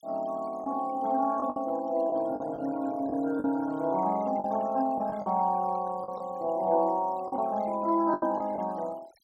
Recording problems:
denoising artefacts; signal-to-artefact ratio 23 dB
lost packets; 7% of the sound replaced, filled with the last packet

